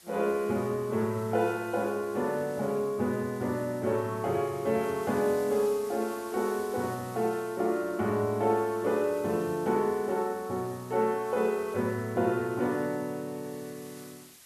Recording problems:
background hiss; slope +1 dB per octave, SNR 20 dB

